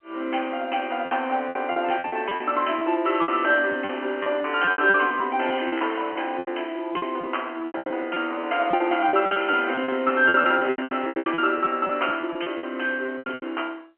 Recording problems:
telephone audio; 260 Hz to 3.1 kHz, G.711
packet loss; 17% of the sound replaced, filled with repeated pitch periods

